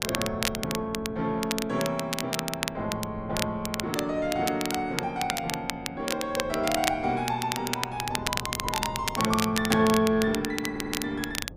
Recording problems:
wind noise; below 300 Hz, SNR 17 dB
crackling; vinyl, SNR 4 dB
stutter; at 11 s

